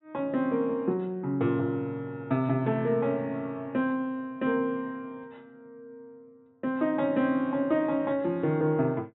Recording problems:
treble cut off; nothing above 3.9 kHz

